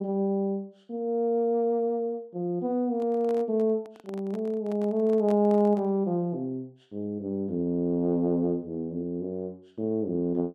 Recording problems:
handling noise; from 3 to 6 s; peak -11 dB vs average level

